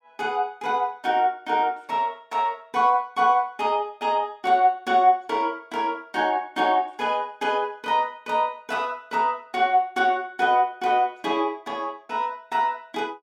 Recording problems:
none

